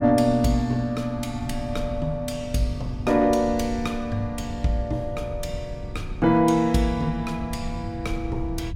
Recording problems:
rumble; below 120 Hz, SNR 12 dB

